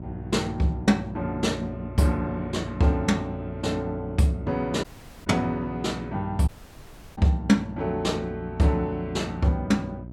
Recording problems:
electrical hum; 60 Hz, harmonics up to 720 Hz, SNR 13 dB
dropout; at 5 s and at 6.5 s for 0.5 s

